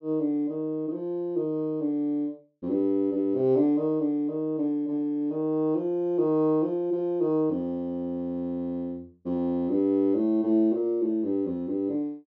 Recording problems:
treble cut off; nothing above 8 kHz

